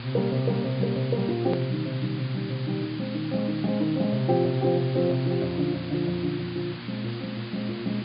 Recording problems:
treble cut off; nothing above 5 kHz
electrical hum; 60 Hz, harmonics up to 600 Hz, SNR 12 dB
hiss; SNR 14 dB
click at an edit; at 1.5 s

